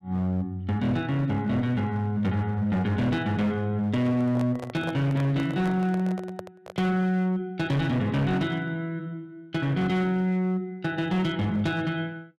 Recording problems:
distorted audio; hard clipping, signal-to-distortion ratio 10 dB
microphone handling noise; from 4 to 7 s; peak -6 dB vs average level

